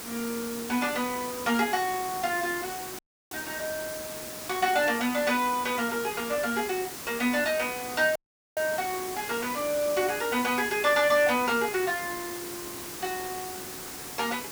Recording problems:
background hiss; slope -3 dB per octave, SNR 9 dB
audio cutting out; at 3 s and at 8 s
crackling; at 4.5 s and from 7 to 10 s; loose cable, SNR 26 dB

